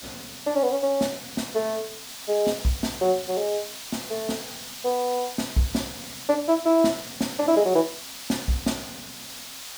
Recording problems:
background hiss; slope +2 dB per octave, SNR 11 dB

